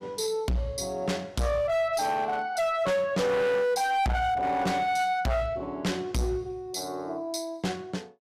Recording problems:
distortion; hard clipping, uneven, signal-to-distortion ratio 7 dB

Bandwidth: 14.5 kHz